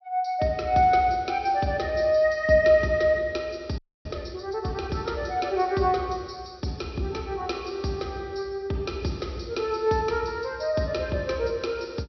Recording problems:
low-pass filter; nothing above 5.9 kHz
frozen audio; at 4 s

